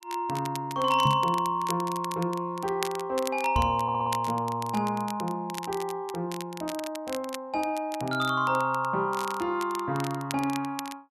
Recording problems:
crackle; vinyl, SNR 13 dB
microphone thump; at 1 s and at 3.5 s; peak +4 dB vs average level
audio stuttering; at 4 s

